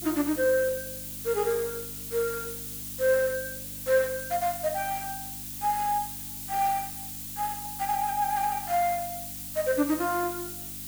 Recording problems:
hum; 50 Hz, harmonics up to 300 Hz, SNR 19 dB
background hiss; slope +3 dB per octave, SNR 7 dB

